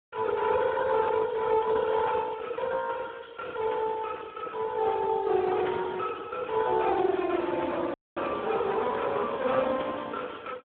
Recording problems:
telephone audio; 280 Hz to 3.4 kHz, Speex
dropout; at 8 s

